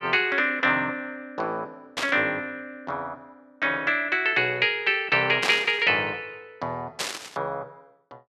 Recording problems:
burst of static; at 2 s, at 5.5 s and at 7 s; peak +2 dB vs average level

